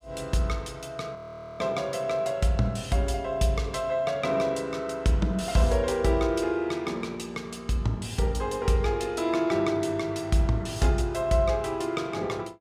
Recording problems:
audio freezing; at 1 s

